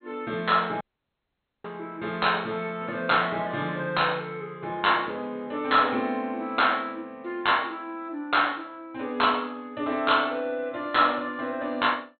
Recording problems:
treble cut off; nothing above 4.1 kHz
audio cutting out; at 1 s for 1 s

